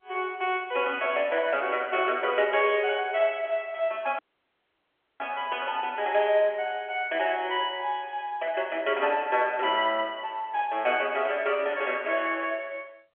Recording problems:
phone line; 260 Hz to 3.3 kHz, G.711
dropout; at 4 s for 1 s

